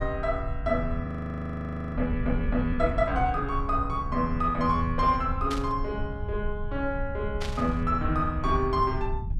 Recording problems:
low-frequency rumble; below 86 Hz, SNR 6 dB
audio freezing; at 1 s for 1 s
static burst; at 5.5 s and at 7.5 s; peak -4 dB vs average level

